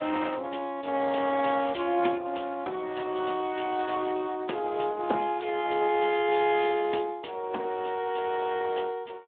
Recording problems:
telephone audio; 240 Hz to 3.5 kHz, Speex

